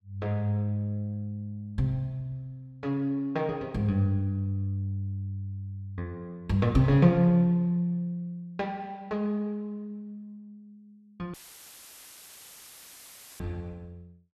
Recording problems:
dropout; at 11 s for 2 s; filled with static

